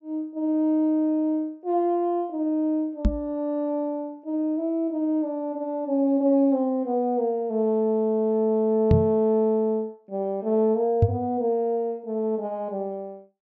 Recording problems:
treble cut off; nothing above 8 kHz
microphone bump; at 3 s, at 9 s and at 11 s; peak +8 dB vs average level

